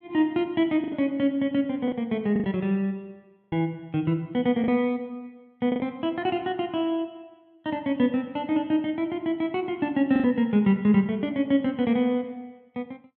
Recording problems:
packet loss; 4% of the sound replaced, filled with the last packet

